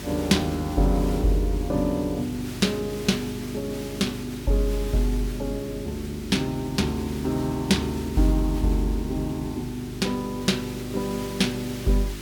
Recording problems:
mains hum; 50 Hz, harmonics up to 400 Hz, SNR 12 dB
background hiss; slope 0 dB per octave, SNR 15 dB

